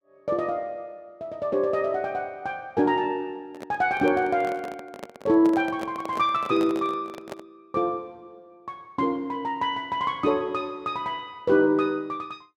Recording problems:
microphone handling noise; from 3.5 to 7.5 s; peak -5 dB vs average level

